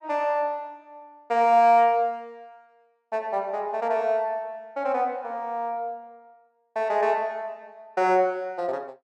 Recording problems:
none

